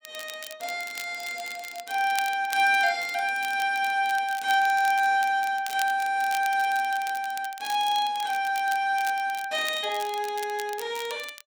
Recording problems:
crackle; vinyl, SNR 16 dB

